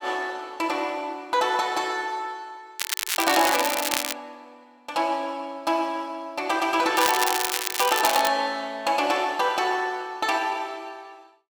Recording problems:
crackle; from 3 to 4 s and from 7 to 8.5 s; loose cable, SNR 1 dB

